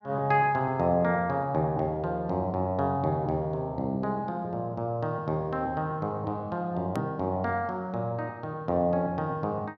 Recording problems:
edit click; at 7 s

